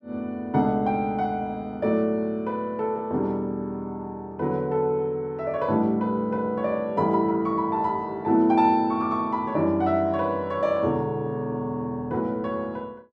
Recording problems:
none

